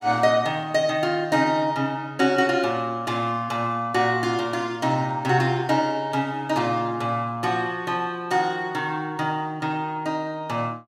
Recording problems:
none

